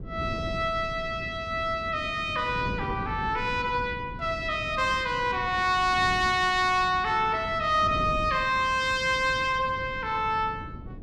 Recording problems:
wind on the microphone; below 250 Hz, SNR 13 dB

